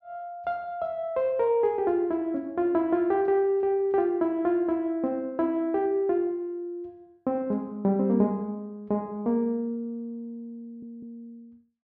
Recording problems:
audio stuttering; at 11 s

